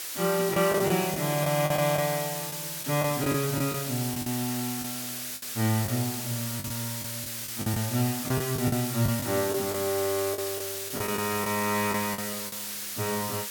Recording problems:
background hiss; slope +2 dB per octave, SNR 4 dB
packet loss; 8% of the sound replaced, filled with the last packet

